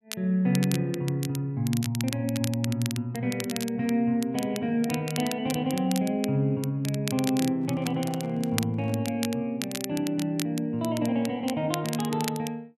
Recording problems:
crackling; vinyl, SNR 10 dB
microphone handling noise; from 7.5 to 9 s; peak -11 dB vs average level

